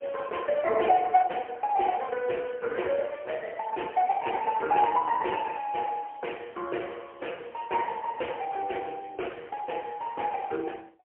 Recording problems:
phone line; 300 Hz to 3.1 kHz, AMR-NB, then MP3

